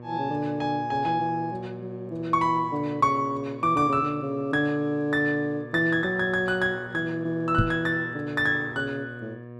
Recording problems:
hum; 60 Hz, harmonics up to 1.2 kHz, SNR 15 dB
knock on the microphone; at 7.5 s; peak +6 dB vs average level

